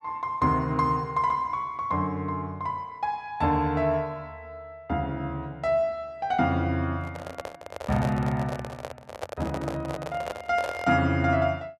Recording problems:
microphone handling noise; from 7 to 11 s; peak -2 dB vs average level

